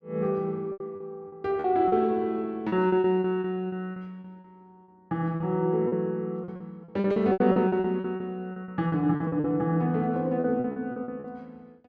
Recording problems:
lost packets; 15% of the sound replaced, filled with repeated pitch periods

